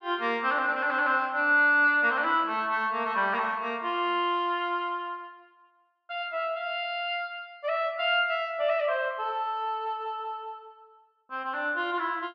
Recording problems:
none

